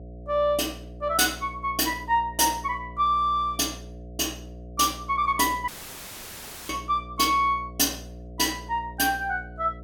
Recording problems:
electrical hum; 60 Hz, harmonics up to 720 Hz, SNR 17 dB
dropout; at 5.5 s for 1 s

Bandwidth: 17 kHz